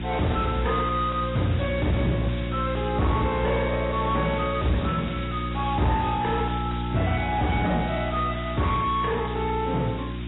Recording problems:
lossy compression; AAC, log-spectral distance 15 dB, nothing above 3.8 kHz
distorted audio; soft clipping, signal-to-distortion ratio 6 dB
hum; 60 Hz, harmonics up to 360 Hz, SNR 4 dB
background hiss; SNR 15 dB

